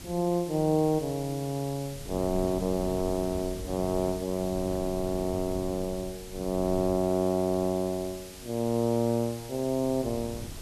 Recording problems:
background hiss; slope +2 dB per octave, SNR 16 dB
wind noise; below 190 Hz, SNR 14 dB

